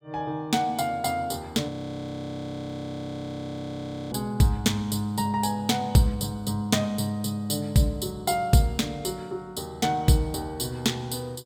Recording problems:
frozen audio; at 1.5 s for 2.5 s

